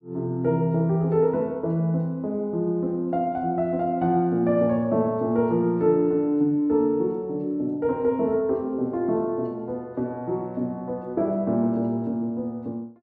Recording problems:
none

